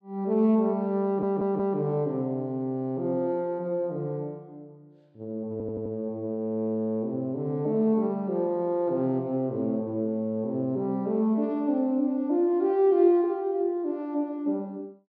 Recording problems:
audio stuttering; at 1 s and at 5.5 s

